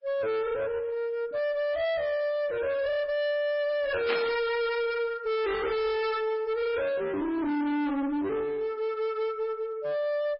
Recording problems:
lossy compression; MP3, log-spectral distance 2 dB, nothing above 5.3 kHz
distortion; hard clipping, uneven, signal-to-distortion ratio 6 dB
static burst; at 4 s; peak +1 dB vs average level

